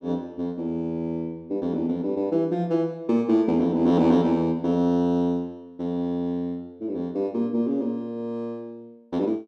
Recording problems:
none

